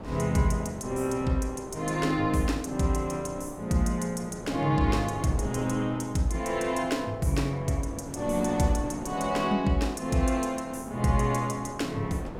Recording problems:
wind noise; below 600 Hz, SNR 13 dB

